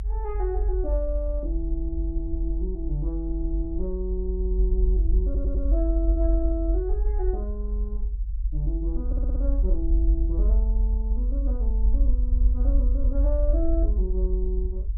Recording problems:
rumble; below 50 Hz, strongest tone 46 Hz, SNR -7 dB
stutter; at 5.5 s and at 9 s

